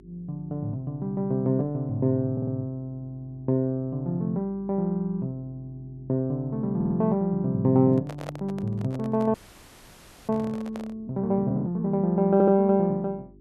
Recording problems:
hum; 50 Hz, harmonics up to 400 Hz, SNR 26 dB
stutter; at 2.5 s, at 7 s and at 12 s
handling noise; from 8 to 11 s; peak -6 dB vs average level
audio freezing; at 9.5 s for 1 s

